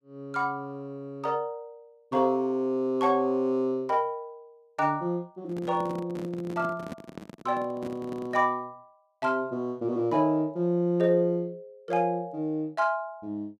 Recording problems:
microphone handling noise; from 5.5 to 8.5 s; peak -6 dB vs average level

